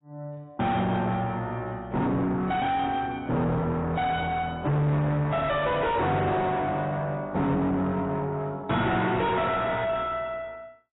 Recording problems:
codec artefacts; AAC, log-spectral distance 2 dB, nothing above 3.8 kHz
distortion; soft clipping, signal-to-distortion ratio 6 dB

